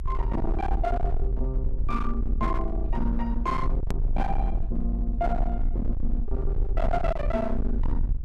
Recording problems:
distortion; hard clipping, uneven, signal-to-distortion ratio 8 dB
rumble; below 48 Hz, SNR -1 dB
edit click; at 4 s

